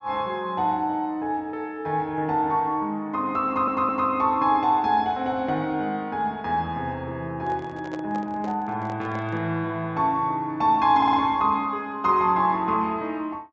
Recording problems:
treble missing; nothing above 8 kHz
audio stuttering; at 3.5 s and at 11 s
microphone handling noise; from 7.5 to 9.5 s; peak -8 dB vs average level

